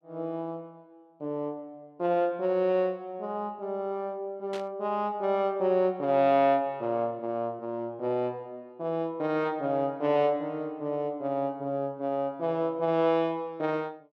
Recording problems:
burst of static; at 4.5 s; peak -9 dB vs average level

